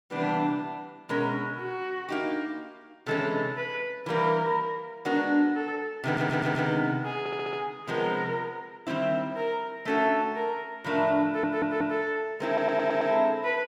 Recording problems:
stutter; 4 times, first at 6 s

